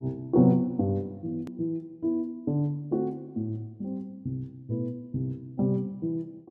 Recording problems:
click at an edit; at 1.5 s

